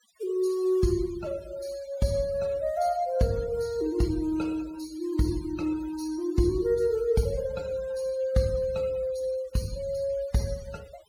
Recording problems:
denoising artefacts; signal-to-artefact ratio 20 dB

